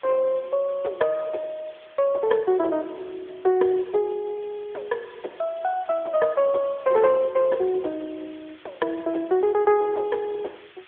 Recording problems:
telephone audio; 320 Hz to 3.7 kHz, AMR-NB
hiss; SNR 26 dB

